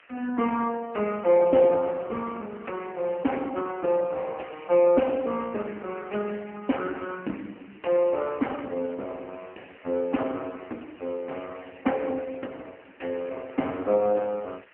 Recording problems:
telephone audio; 220 Hz to 3 kHz, AMR-NB
background hiss; SNR 27 dB

